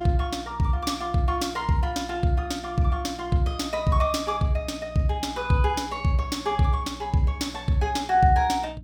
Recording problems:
hum; 60 Hz, harmonics up to 300 Hz, SNR 19 dB

